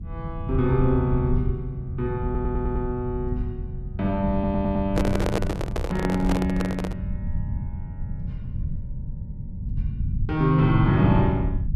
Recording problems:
electrical hum; 50 Hz, harmonics up to 400 Hz, SNR 20 dB
low-frequency rumble; below 120 Hz, SNR 6 dB
audio stuttering; at 2.5 s and at 4.5 s
microphone handling noise; from 4.5 to 7 s; peak +2 dB vs average level

